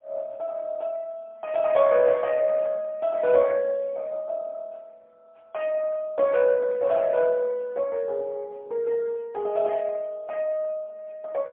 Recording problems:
phone line; 190 Hz to 3.4 kHz, AMR-NB, then MP3

